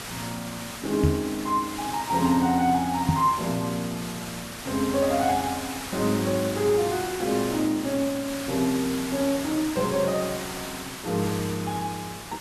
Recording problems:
background hiss; slope -1 dB per octave, SNR 9 dB
microphone bump; at 1 s and at 3 s; peak +7 dB vs average level

